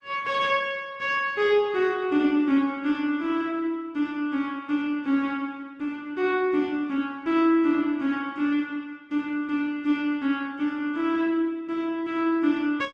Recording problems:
codec artefacts; Opus, log-spectral distance 2 dB

